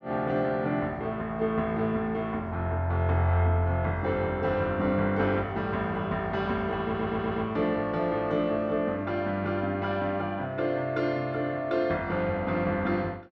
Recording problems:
audio stuttering; at 7 s

